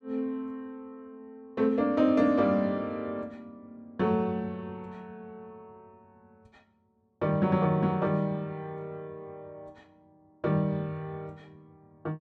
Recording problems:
none

